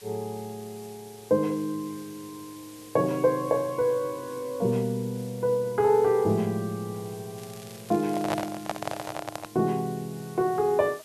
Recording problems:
hiss; slope 0 dB per octave, SNR 21 dB
crackle; from 7.5 to 9 s; loose cable, SNR 21 dB
handling noise; from 8 to 9.5 s; peak +3 dB vs average level

